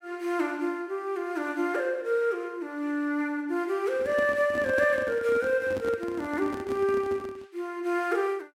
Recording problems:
handling noise; from 4 to 7.5 s; peak -5 dB vs average level

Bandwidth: 16 kHz